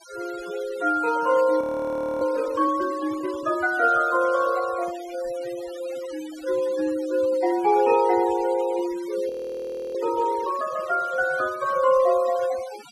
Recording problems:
noise reduction artefacts; signal-to-artefact ratio 19 dB
audio freezing; at 1.5 s for 0.5 s and at 9.5 s for 0.5 s

